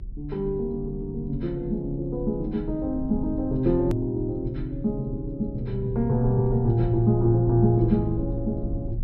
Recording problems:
low-pass filter; nothing above 5.5 kHz
rumble; below 70 Hz, SNR 11 dB
hard cut with a click; at 4 s

